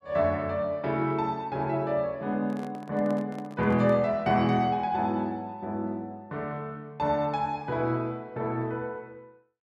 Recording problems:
handling noise; from 2.5 to 4 s; peak -10 dB vs average level

